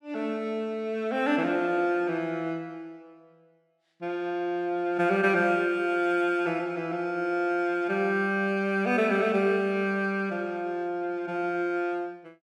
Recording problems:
none

